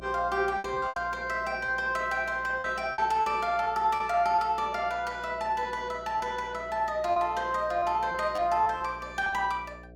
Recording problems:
electrical hum; 60 Hz, harmonics up to 720 Hz, SNR 21 dB
lost packets; 6% of the sound replaced, filled with repeated pitch periods

